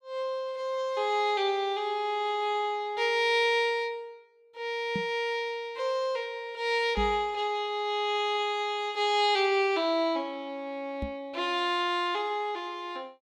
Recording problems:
microphone bump; at 5 s, at 7 s and at 11 s; peak -2 dB vs average level

